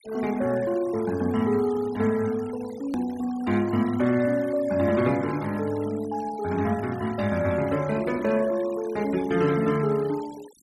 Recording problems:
denoising artefacts; signal-to-artefact ratio 19 dB
click at an edit; at 3 s

